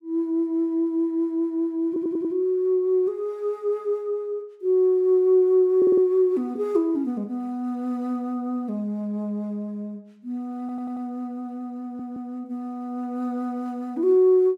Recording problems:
audio stuttering; 4 times, first at 2 s

